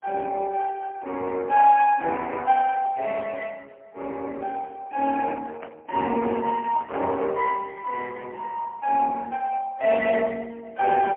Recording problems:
telephone audio; 280 Hz to 2.3 kHz, AMR-NB, then MP3
handling noise; from 5 to 7.5 s; peak -6 dB vs average level

